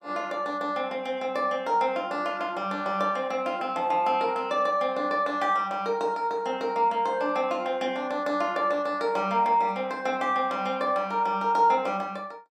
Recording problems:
none

